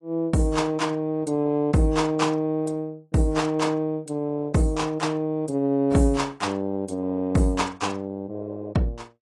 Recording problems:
lossy compression; AAC, log-spectral distance 2 dB, nothing above 10.1 kHz

